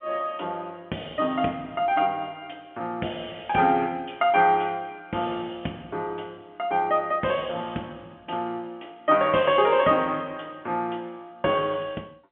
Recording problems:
telephone audio; 190 Hz to 3.4 kHz, G.711

